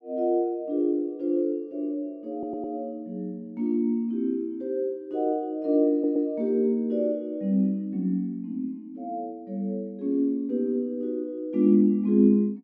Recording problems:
audio stuttering; at 2.5 s and at 6 s

